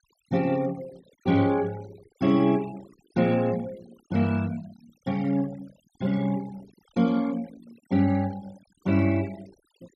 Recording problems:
denoising artefacts; signal-to-artefact ratio 22 dB

